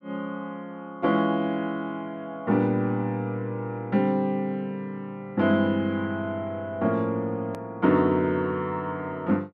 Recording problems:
click at an edit; at 7.5 s

